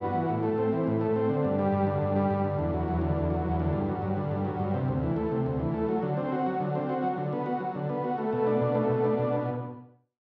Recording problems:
none

